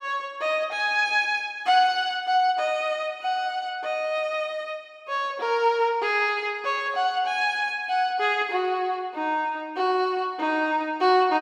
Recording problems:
none

